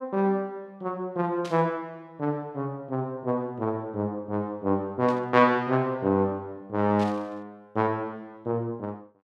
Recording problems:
burst of static; at 1.5 s, at 5 s and at 7 s; peak -9 dB vs average level

